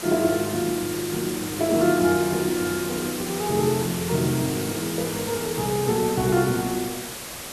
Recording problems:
hiss; slope -2 dB per octave, SNR 7 dB

